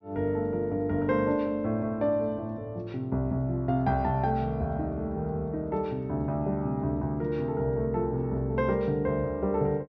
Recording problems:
treble cut off; nothing above 6 kHz

